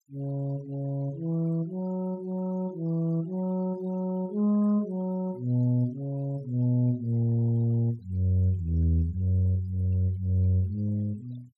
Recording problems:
noise reduction artefacts; signal-to-artefact ratio 28 dB

